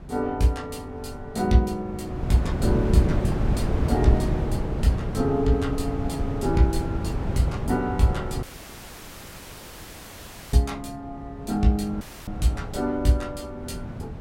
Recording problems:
wind on the microphone; below 200 Hz, SNR 3 dB
audio cutting out; at 8.5 s for 2 s and at 12 s

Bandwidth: 16 kHz